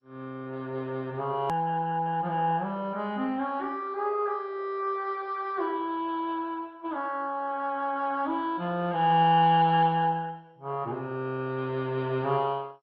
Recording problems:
codec artefacts; MP2, log-spectral distance 3 dB, nothing above 13.1 kHz
edit click; at 1.5 s

